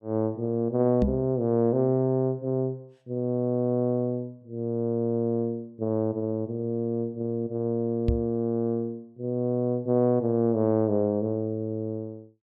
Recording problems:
microphone thump; at 1 s and at 8 s; peak +5 dB vs average level

